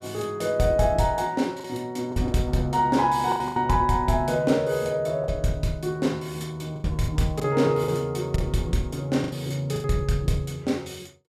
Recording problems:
packet loss; 7% of the sound replaced, filled with the last packet

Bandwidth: 14.5 kHz